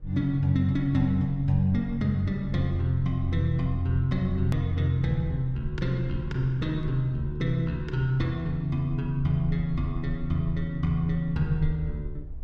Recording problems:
rumble; below 50 Hz, SNR 14 dB
edit click; at 4.5 s

